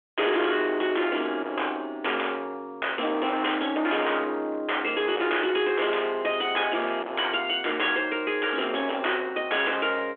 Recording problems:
telephone audio; 280 Hz to 3.4 kHz, G.726
distorted audio; hard clipping, signal-to-distortion ratio 8 dB

